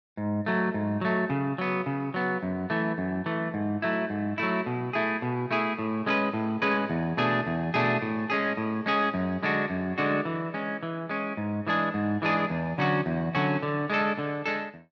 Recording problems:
none

